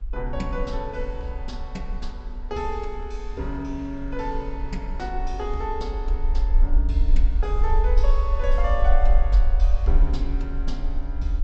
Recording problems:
low-pass filter; nothing above 7.9 kHz
rumble; below 46 Hz, strongest tone 22 Hz, SNR -6 dB
wind noise; below 190 Hz, SNR 17 dB

